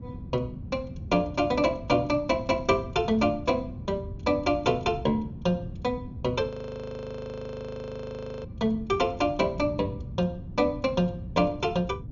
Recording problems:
low-pass filter; nothing above 7 kHz
wind noise; below 180 Hz, SNR 12 dB
frozen audio; at 6.5 s for 2 s

